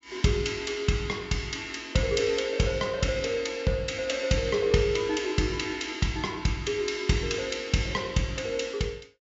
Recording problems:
treble missing; nothing above 8 kHz

